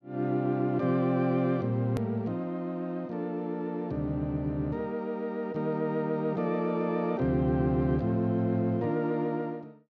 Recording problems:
click at an edit; at 2 s

